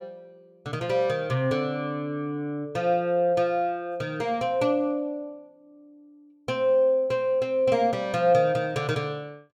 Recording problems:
none

